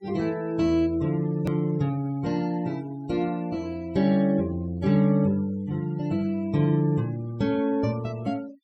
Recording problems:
denoising artefacts; signal-to-artefact ratio 24 dB
edit click; at 1.5 s

